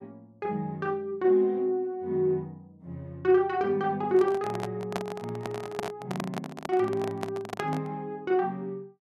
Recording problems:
handling noise; from 4 to 8 s; peak +1 dB vs average level

